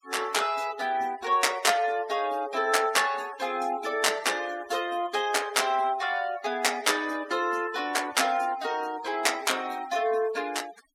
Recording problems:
noise reduction artefacts; signal-to-artefact ratio 19 dB

